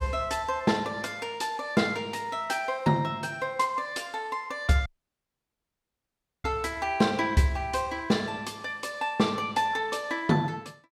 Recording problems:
dropout; at 5 s for 1.5 s

